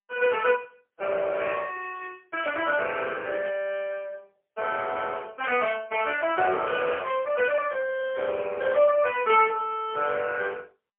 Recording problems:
telephone audio; 320 Hz to 3.1 kHz, AMR-NB, then MP3
static burst; at 3.5 s; peak -8 dB vs average level

